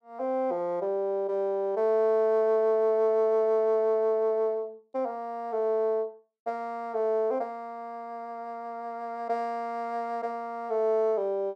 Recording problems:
none

